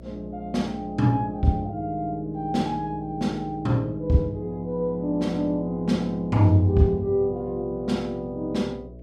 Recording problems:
hum; 60 Hz, harmonics up to 660 Hz, SNR 19 dB

